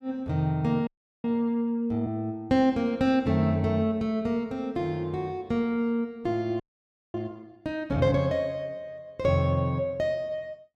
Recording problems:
audio freezing; at 1 s and at 6.5 s for 0.5 s

